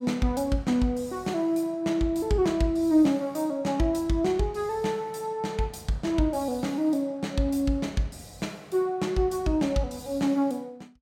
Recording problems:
none

